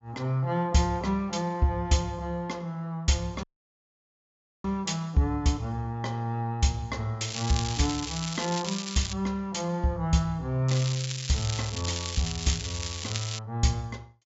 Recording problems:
low-pass filter; nothing above 8 kHz
audio cutting out; at 3.5 s for 1 s
crackle; from 7.5 to 9 s and from 11 to 13 s; loose cable, SNR 6 dB

